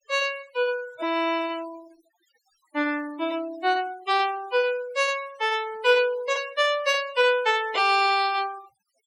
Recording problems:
noise reduction artefacts; signal-to-artefact ratio 20 dB

